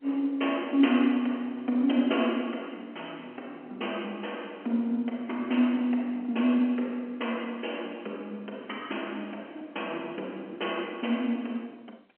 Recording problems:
phone line; 220 Hz to 3.2 kHz, G.711

